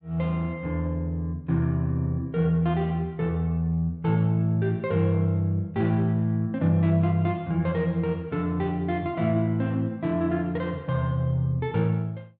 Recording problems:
none

